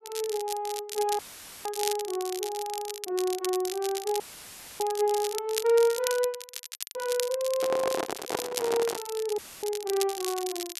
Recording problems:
crackling; vinyl, SNR 7 dB
dropout; at 1 s, at 4 s for 0.5 s and at 9.5 s; filled with static
handling noise; from 7.5 to 9 s; peak +3 dB vs average level

